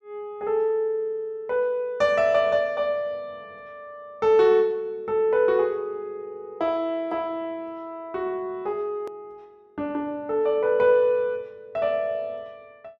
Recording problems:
edit click; at 9 s

